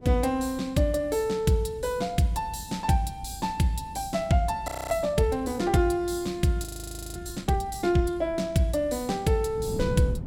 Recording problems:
wind noise; below 200 Hz, SNR 16 dB
frozen audio; at 4.5 s and at 6.5 s for 0.5 s

